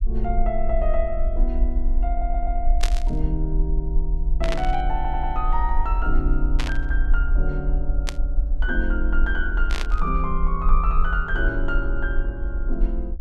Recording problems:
rumble; below 44 Hz, strongest tone 24 Hz, SNR -3 dB
audio stuttering; at 2 s and at 5 s
static burst; 5 times, first at 3 s; peak +4 dB vs average level

